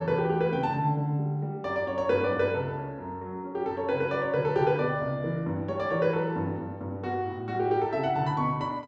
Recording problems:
none

